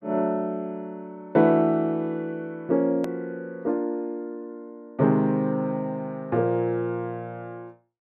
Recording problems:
edit click; at 3 s

